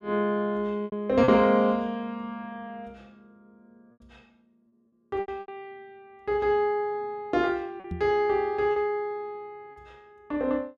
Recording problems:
lost packets; 5% of the sound replaced, filled with repeated pitch periods
microphone bump; at 8 s; peak -4 dB vs average level

